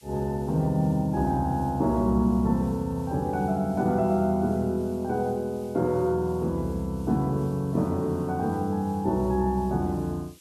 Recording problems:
background hiss; slope +4 dB per octave, SNR 28 dB

